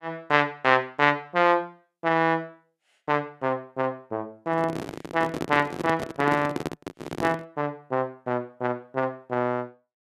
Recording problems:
handling noise; from 4.5 to 7.5 s; peak 0 dB vs average level

